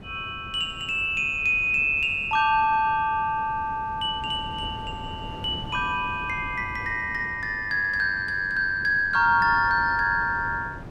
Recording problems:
wind noise; below 370 Hz, SNR 17 dB

